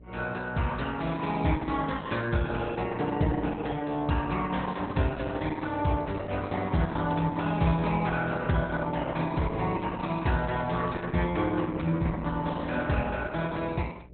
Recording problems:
lossy compression; Opus, log-spectral distance 5 dB, nothing above 3.9 kHz
electrical hum; 60 Hz, harmonics up to 600 Hz, SNR 21 dB
crackle; 4 times, first at 1 s; loose cable, SNR 28 dB

